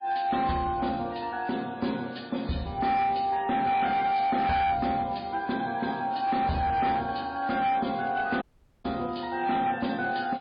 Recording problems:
lossy compression; MP3, log-spectral distance 3 dB, nothing above 4.6 kHz
distorted audio; hard clipping, signal-to-distortion ratio 11 dB
audio cutting out; at 8.5 s

